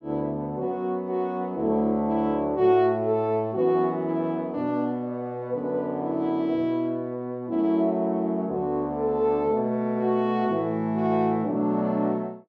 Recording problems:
none

